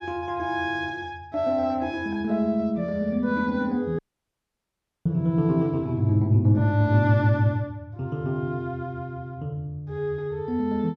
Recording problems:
dropout; at 4 s for 1 s

